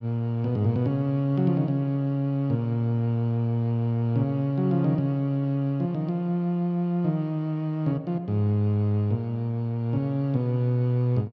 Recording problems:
none

